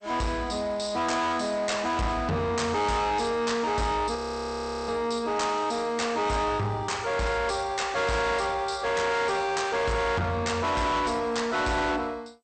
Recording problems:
lossy codec; MP2, log-spectral distance 3 dB, nothing above 8.5 kHz
distortion; soft clipping, signal-to-distortion ratio 7 dB
audio freezing; at 4 s for 0.5 s

